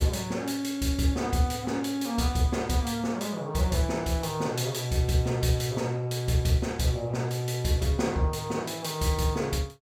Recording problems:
none

